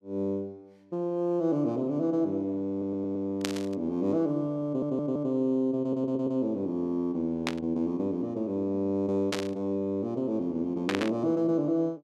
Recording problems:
audio stuttering; at 2.5 s, at 4.5 s and at 6 s
static burst; 4 times, first at 3.5 s; peak +3 dB vs average level

